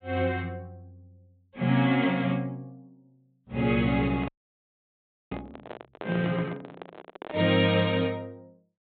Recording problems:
treble missing; nothing above 4 kHz
handling noise; from 4 to 7.5 s; peak -7 dB vs average level
audio freezing; at 4.5 s for 1 s

